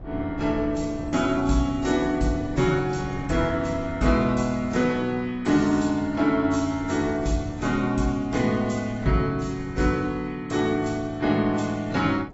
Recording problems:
lossy compression; AAC, log-spectral distance 3 dB, nothing above 7.3 kHz
wind on the microphone; below 250 Hz, SNR 17 dB

